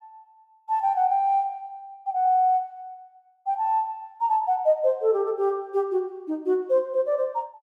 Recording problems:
none

